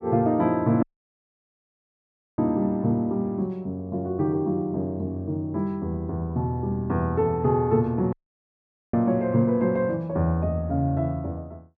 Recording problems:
dropout; at 1 s for 1.5 s and at 8 s for 1 s

